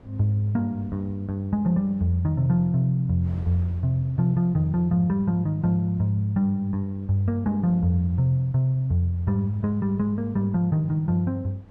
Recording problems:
wind noise; below 320 Hz, SNR 25 dB

